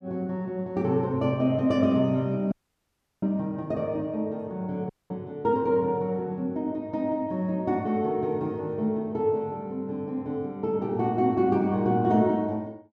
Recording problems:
audio cutting out; at 2.5 s for 0.5 s and at 5 s

